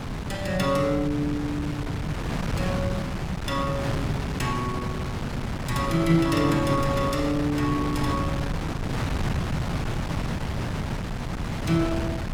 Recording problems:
wind on the microphone; below 540 Hz, SNR 2 dB

